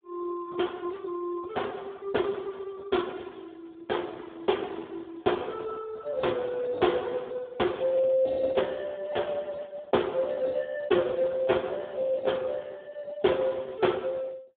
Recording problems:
telephone audio; 280 Hz to 3.6 kHz, Speex

